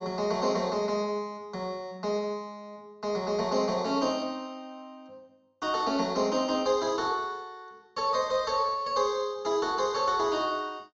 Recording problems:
treble cut off; nothing above 8 kHz

